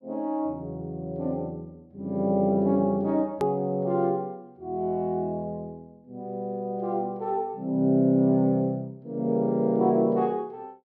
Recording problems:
hard cut with a click; at 3.5 s

